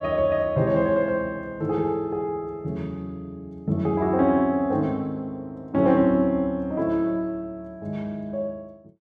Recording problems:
none

